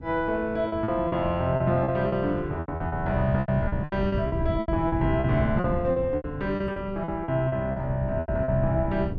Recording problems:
wind noise; below 170 Hz, SNR 7 dB
packet loss; 15% of the sound replaced, filled with repeated pitch periods

